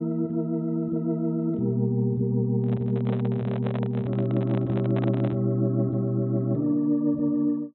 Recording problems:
treble cut off; nothing above 4 kHz
microphone handling noise; from 2.5 to 5.5 s; peak -6 dB vs average level

